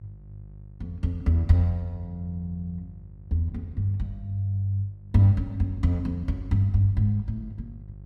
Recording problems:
hum; 50 Hz, harmonics up to 400 Hz, SNR 20 dB

